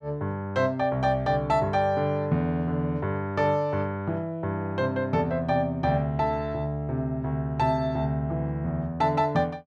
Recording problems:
none

